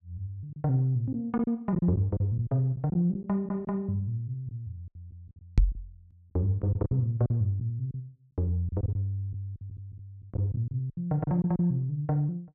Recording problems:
packet loss; 9% of the sound replaced, filled with silence
microphone thump; at 5.5 s; peak +10 dB vs average level

